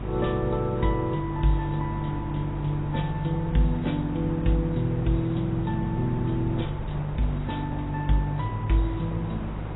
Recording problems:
codec artefacts; AAC, log-spectral distance 3 dB, nothing above 3.8 kHz
hum; 50 Hz, harmonics up to 350 Hz, SNR 8 dB
hiss; SNR 12 dB
low-frequency rumble; below 90 Hz, SNR 18 dB

